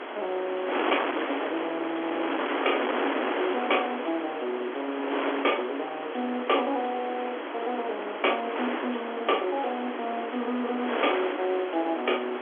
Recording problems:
phone line; 260 Hz to 3.4 kHz, G.711
distorted audio; hard clipping, signal-to-distortion ratio 13 dB
wind noise; below 1.7 kHz, SNR 2 dB

